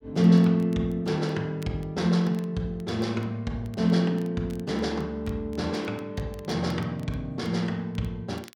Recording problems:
crackling; vinyl, SNR 29 dB

